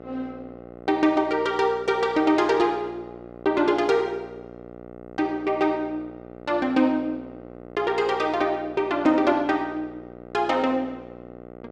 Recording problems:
electrical hum; 60 Hz, harmonics up to 2 kHz, SNR 18 dB

